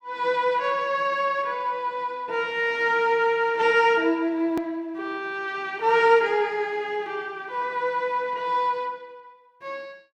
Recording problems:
click at an edit; at 4.5 s

